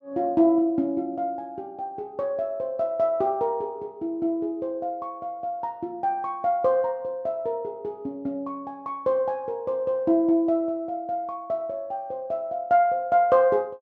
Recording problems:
none

